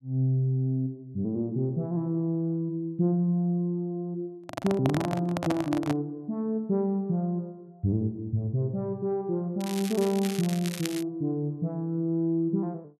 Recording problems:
microphone handling noise; from 4.5 to 6 s; peak +2 dB vs average level
crackle; from 9.5 to 11 s; loose cable, SNR 10 dB

